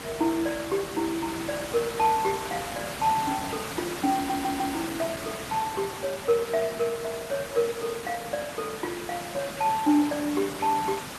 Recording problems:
lossy compression; Opus, log-spectral distance 7 dB
hiss; slope -3 dB per octave, SNR 8 dB
stutter; at 4 s

